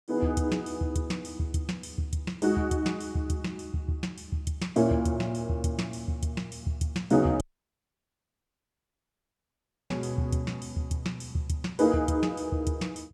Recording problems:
audio cutting out; at 7.5 s for 2.5 s

